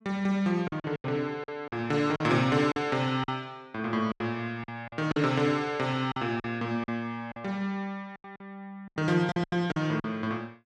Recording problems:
packet loss; 11% of the sound replaced, filled with silence

